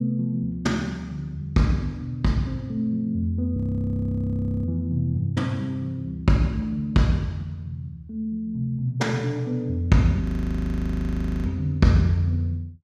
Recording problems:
audio freezing; at 3.5 s for 1 s and at 10 s for 1 s

